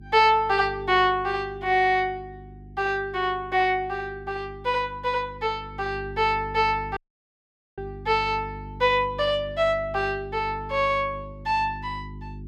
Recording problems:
hum; 50 Hz, harmonics up to 400 Hz, SNR 17 dB
dropout; at 7 s for 1 s

